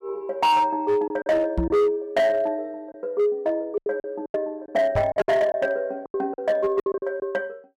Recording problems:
distortion; hard clipping, signal-to-distortion ratio 11 dB
packet loss; 9% of the sound replaced, filled with silence
microphone bump; at 1.5 s and at 5 s; peak +1 dB vs average level

